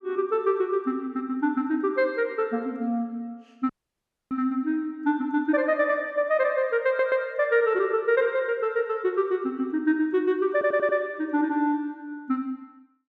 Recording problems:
audio cutting out; at 3.5 s for 0.5 s
stutter; at 7 s and at 11 s

